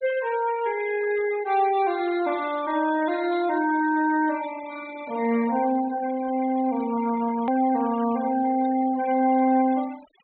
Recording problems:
low-pass filter; nothing above 4 kHz
noise reduction artefacts; signal-to-artefact ratio 17 dB
edit click; at 7.5 s

